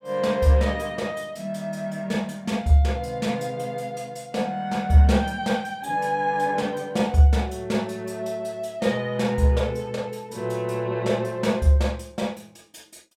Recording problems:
none

